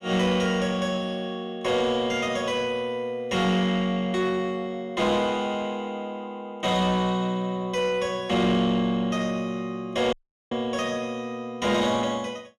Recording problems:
distorted audio; soft clipping, signal-to-distortion ratio 11 dB
dropout; at 10 s

